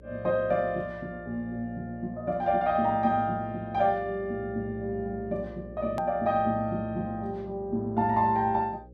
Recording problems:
mains hum; 60 Hz, harmonics up to 540 Hz, SNR 20 dB
click at an edit; at 6 s

